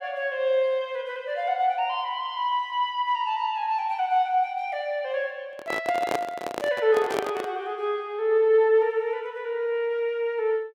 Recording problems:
handling noise; from 5.5 to 7.5 s; peak +1 dB vs average level

